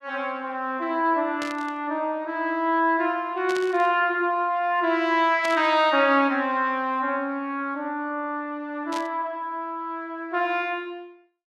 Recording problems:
static burst; 4 times, first at 1.5 s; peak -5 dB vs average level

